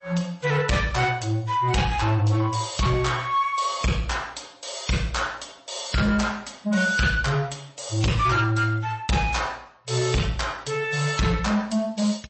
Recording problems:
lossy codec; MP3, log-spectral distance 5 dB, nothing above 8 kHz
distorted audio; soft clipping, signal-to-distortion ratio 10 dB

